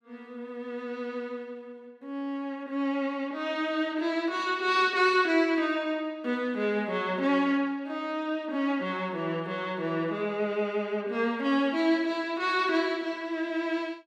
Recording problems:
none

